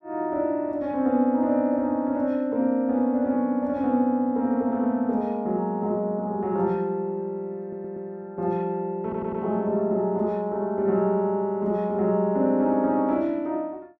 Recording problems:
stutter; at 7.5 s and at 9 s

